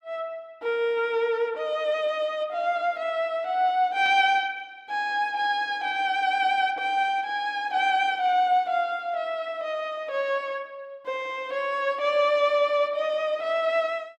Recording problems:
static burst; at 4 s; peak -13 dB vs average level

